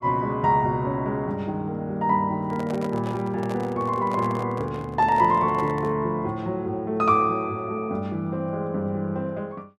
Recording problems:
handling noise; from 2.5 to 6 s; peak -7 dB vs average level

